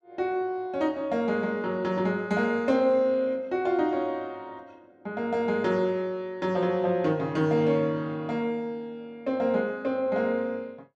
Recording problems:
none

